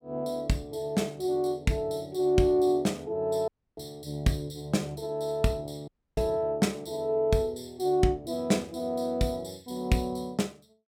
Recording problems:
dropout; at 3.5 s and at 6 s

